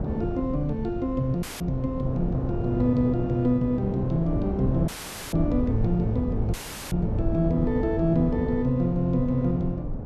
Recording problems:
electrical hum; 60 Hz, harmonics up to 660 Hz, SNR 19 dB
low-frequency rumble; below 82 Hz, SNR 11 dB
wind on the microphone; below 340 Hz, SNR 7 dB
dropout; at 1.5 s, at 5 s and at 6.5 s; filled with static

